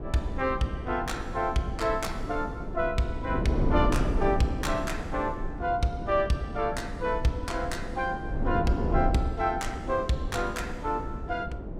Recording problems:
wind on the microphone; below 280 Hz, SNR 4 dB

